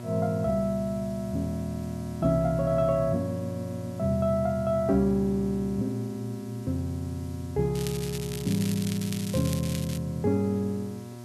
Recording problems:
electrical hum; 60 Hz, harmonics up to 1.7 kHz, SNR 12 dB
hiss; slope +2 dB per octave, SNR 25 dB
crackle; from 8 to 10 s; loose cable, SNR 10 dB

